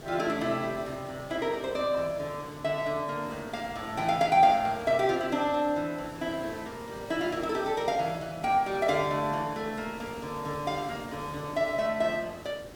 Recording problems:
hiss; slope -6 dB per octave, SNR 16 dB

